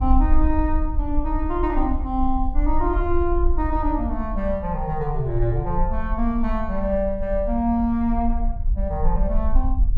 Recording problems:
rumble; below 50 Hz, strongest tone 20 Hz, SNR 2 dB

